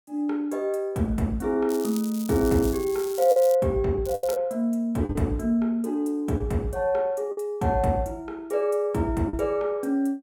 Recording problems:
lost packets; 3% of the sound replaced, filled with the last packet
crackle; from 1.5 to 3.5 s and at 4 s; loose cable, SNR 15 dB

